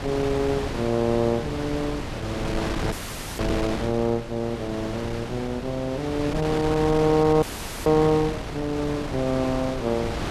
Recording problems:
wind on the microphone; below 1.1 kHz, SNR 6 dB
audio freezing; at 3 s and at 7.5 s

